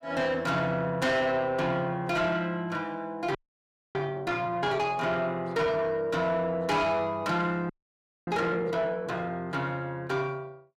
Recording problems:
distortion; soft clipping, signal-to-distortion ratio 11 dB
audio freezing; at 3.5 s for 0.5 s and at 7.5 s for 0.5 s

